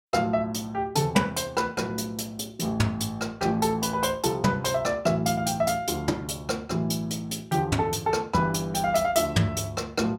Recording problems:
none

